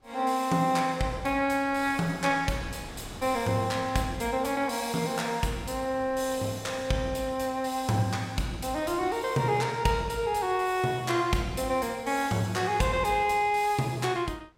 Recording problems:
wind noise; below 1 kHz, SNR 21 dB

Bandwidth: 16 kHz